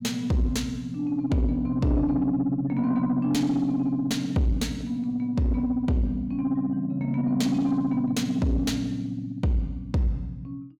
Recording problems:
distortion; soft clipping, signal-to-distortion ratio 11 dB

